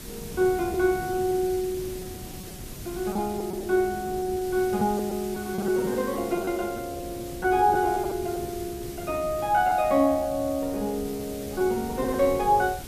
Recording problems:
background hiss; slope +1 dB per octave, SNR 16 dB
wind noise; below 280 Hz, SNR 16 dB
packet loss; 8% of the sound replaced, filled with repeated pitch periods

